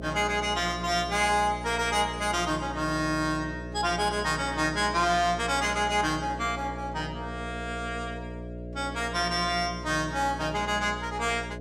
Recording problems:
hum; 60 Hz, harmonics up to 660 Hz, SNR 11 dB

